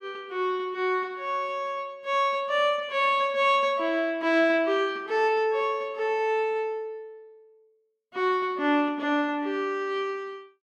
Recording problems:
none

